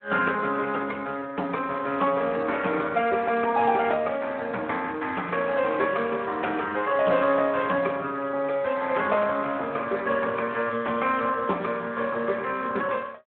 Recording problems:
phone line; 260 Hz to 2.8 kHz, Speex

